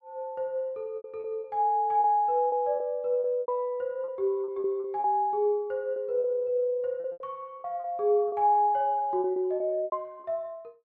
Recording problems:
lost packets; 11% of the sound replaced, filled with repeated pitch periods

